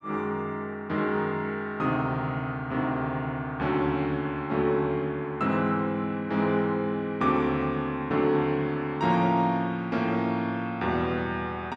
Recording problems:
none

